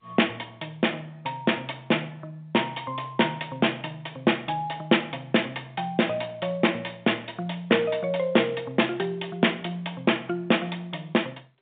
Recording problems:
telephone audio; 190 Hz to 3.6 kHz, G.711

